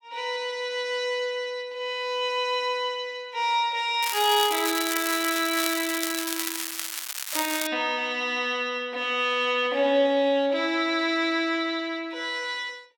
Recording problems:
crackle; from 4 to 7.5 s; loose cable, SNR 4 dB

